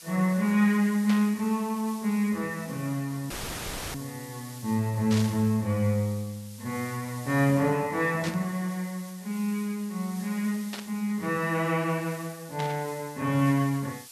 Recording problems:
hiss; slope +2 dB per octave, SNR 18 dB
burst of static; 5 times, first at 1 s; peak -4 dB vs average level
audio cutting out; at 3.5 s for 0.5 s; filled with static

